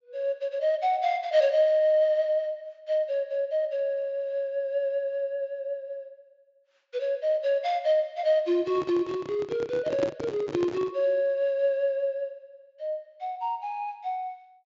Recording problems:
treble cut off; nothing above 7.4 kHz
microphone handling noise; from 8.5 to 11 s; peak +1 dB vs average level

